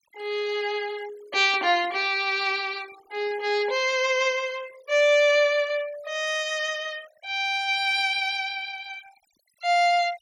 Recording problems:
noise reduction artefacts; signal-to-artefact ratio 22 dB

